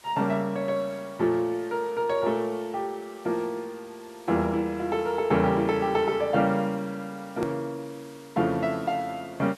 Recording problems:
background hiss; slope 0 dB per octave, SNR 25 dB
edit click; at 7.5 s

